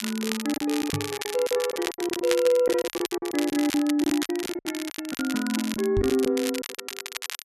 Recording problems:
crackle; vinyl, SNR 8 dB
lost packets; 17% of the sound replaced, filled with silence
microphone bump; at 1 s and at 6 s; peak +1 dB vs average level

